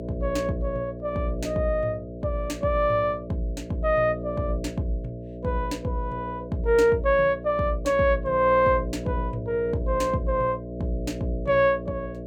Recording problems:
electrical hum; 60 Hz, harmonics up to 660 Hz, SNR 10 dB

